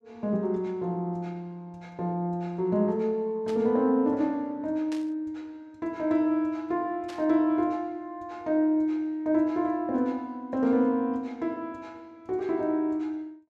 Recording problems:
burst of static; at 3.5 s, at 5 s and at 7 s; peak -11 dB vs average level

